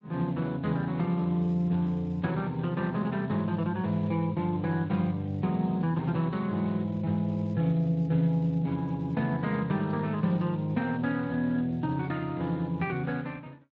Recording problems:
codec artefacts; Speex, log-spectral distance 2 dB

